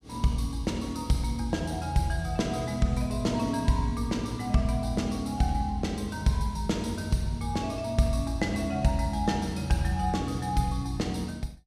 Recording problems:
none

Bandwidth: 14.5 kHz